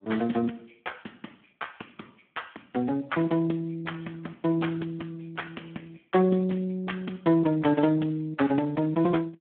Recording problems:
telephone audio; 170 Hz to 3.3 kHz, Speex

